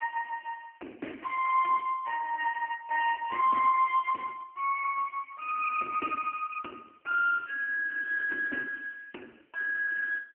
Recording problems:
telephone audio; 560 Hz to 2.8 kHz, AMR-NB

